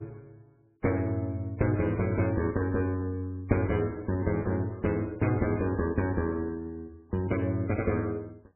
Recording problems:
lossy compression; MP3, log-spectral distance 2 dB, nothing above 2.4 kHz

